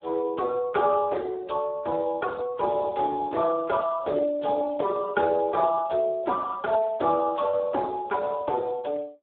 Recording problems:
phone line; 300 Hz to 3.9 kHz, Speex

